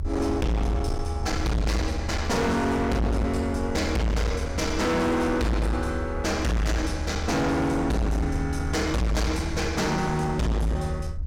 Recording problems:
distortion; hard clipping, signal-to-distortion ratio 6 dB
low-frequency rumble; below 80 Hz, SNR 7 dB

